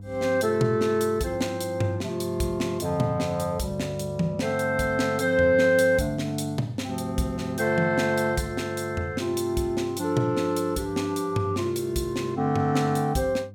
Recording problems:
hum; 50 Hz, harmonics up to 500 Hz, SNR 16 dB

